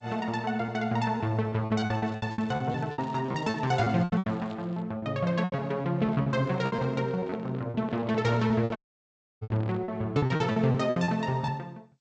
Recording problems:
lossy compression; G.722, log-spectral distance 2 dB, nothing above 8 kHz
packet loss; 15% of the sound replaced, filled with repeated pitch periods
crackling; from 2 to 5 s; loose cable, SNR 28 dB
microphone handling noise; from 6 to 10 s; peak -6 dB vs average level
audio cutting out; at 9 s for 0.5 s

